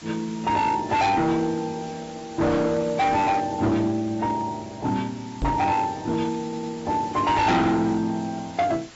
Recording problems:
lossy codec; AAC, log-spectral distance 7 dB, nothing above 7.6 kHz
distortion; hard clipping, signal-to-distortion ratio 7 dB
background hiss; slope -1 dB per octave, SNR 20 dB
knock on the microphone; at 5.5 s; peak +1 dB vs average level
stutter; at 6.5 s

